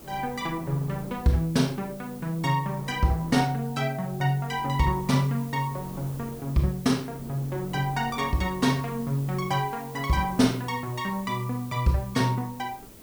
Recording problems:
hiss; slope 0 dB per octave, SNR 20 dB
wind on the microphone; below 480 Hz, SNR 20 dB

